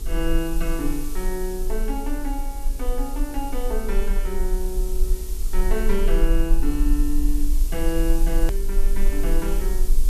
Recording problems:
mains hum; 50 Hz, harmonics up to 450 Hz, SNR 16 dB
background hiss; SNR 10 dB
low-frequency rumble; below 36 Hz, strongest tone 18 Hz, SNR -2 dB
click at an edit; at 8.5 s

